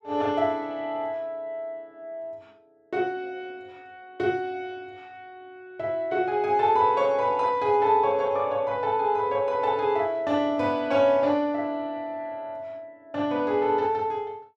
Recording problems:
none

